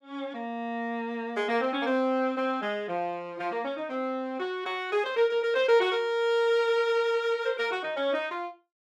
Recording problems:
none

